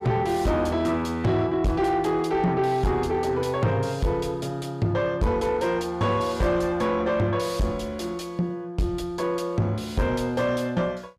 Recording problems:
distortion; soft clipping, signal-to-distortion ratio 8 dB

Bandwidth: 15 kHz